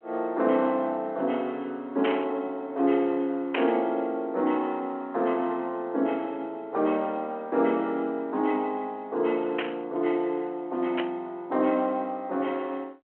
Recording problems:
phone line; 220 Hz to 3.2 kHz, G.726
static burst; 4 times, first at 2 s; peak +2 dB vs average level

